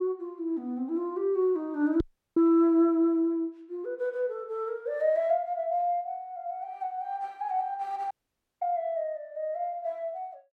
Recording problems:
knock on the microphone; at 2 s; peak -3 dB vs average level
audio cutting out; at 2 s and at 8 s for 0.5 s

